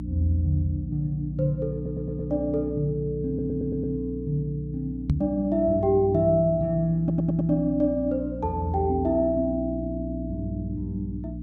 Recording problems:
hum; 60 Hz, harmonics up to 300 Hz, SNR 9 dB
audio stuttering; at 2 s, at 3.5 s and at 7 s
knock on the microphone; at 5 s; peak +6 dB vs average level

